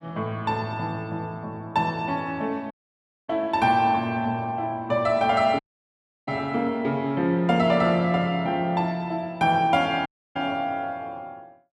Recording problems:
audio cutting out; at 2.5 s for 0.5 s, at 5.5 s for 0.5 s and at 10 s

